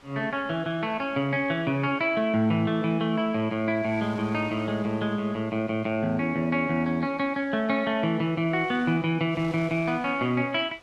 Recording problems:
wind noise; below 3.3 kHz, SNR 25 dB

